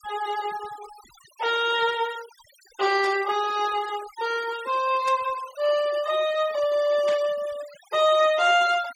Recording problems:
denoising artefacts; signal-to-artefact ratio 18 dB
static burst; at 3 s, at 5 s and at 7 s; peak -10 dB vs average level

